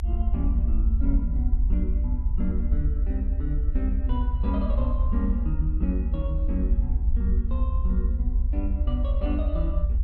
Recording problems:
rumble; below 70 Hz, SNR -7 dB

